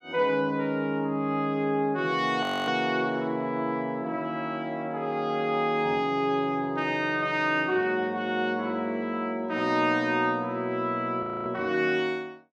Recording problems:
frozen audio; at 2.5 s and at 11 s

